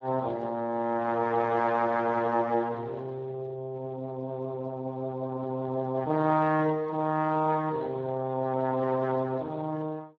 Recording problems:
lossy codec; Speex, log-spectral distance 2 dB

